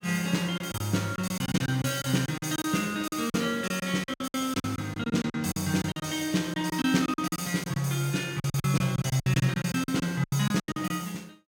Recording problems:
packet loss; 16% of the sound replaced, filled with silence

